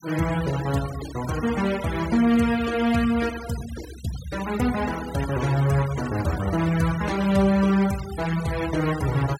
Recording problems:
denoising artefacts; signal-to-artefact ratio 15 dB

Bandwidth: 16 kHz